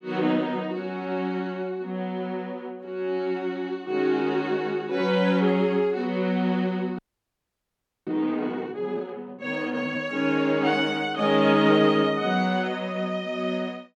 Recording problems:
audio freezing; at 7 s for 1 s

